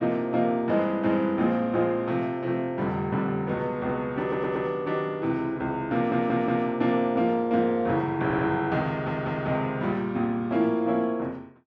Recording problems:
stutter; 4 times, first at 4 s

